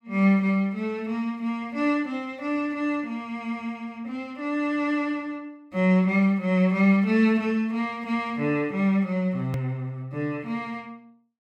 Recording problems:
hard cut with a click; at 9.5 s

